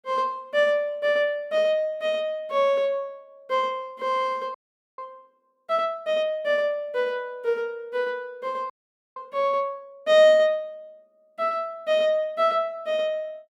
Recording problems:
audio freezing; at 4.5 s and at 8.5 s

